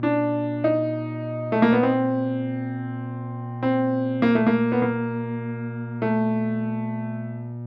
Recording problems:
hum; 60 Hz, harmonics up to 960 Hz, SNR 9 dB

